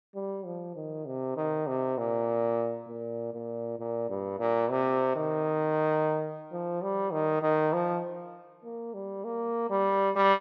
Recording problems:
none

